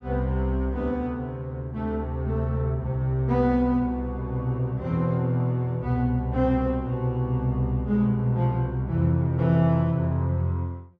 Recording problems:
none

